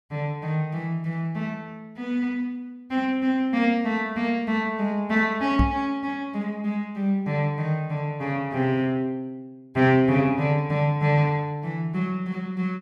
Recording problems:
microphone thump; at 5.5 s; peak +6 dB vs average level

